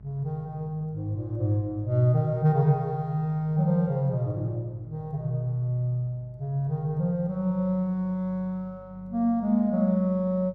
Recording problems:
hum; 50 Hz, harmonics up to 650 Hz, SNR 24 dB

